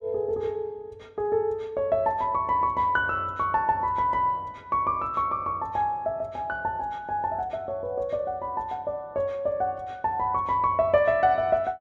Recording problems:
none

